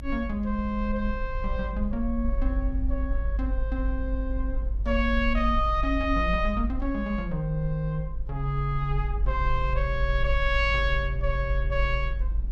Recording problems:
low-frequency rumble; below 50 Hz, strongest tone 48 Hz, SNR 2 dB

